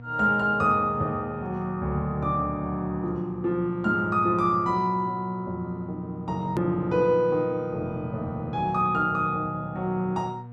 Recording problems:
hum; 60 Hz, harmonics up to 960 Hz, SNR 16 dB
edit click; at 6.5 s

